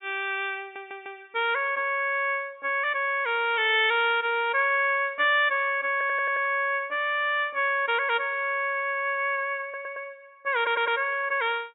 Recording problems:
treble missing; nothing above 4 kHz
audio stuttering; 4 times, first at 0.5 s

